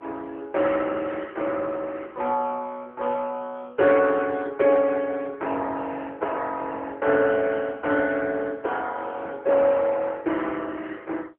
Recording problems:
phone line; 260 Hz to 3.4 kHz, AMR-NB

